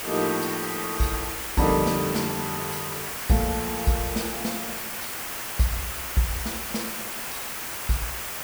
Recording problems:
background hiss; SNR 2 dB

